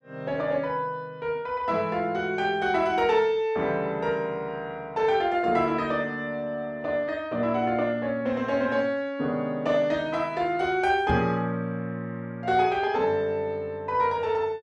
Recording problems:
microphone bump; at 11 s; peak +1 dB vs average level

